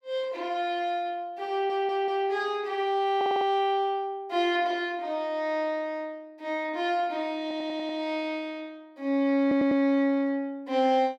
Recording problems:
stutter; 4 times, first at 1.5 s

